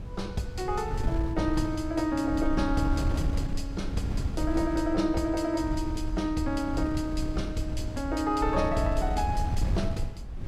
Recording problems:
wind noise; below 100 Hz, SNR 3 dB

